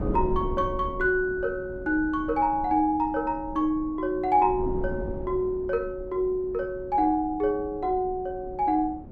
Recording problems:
wind noise; below 240 Hz, SNR 13 dB

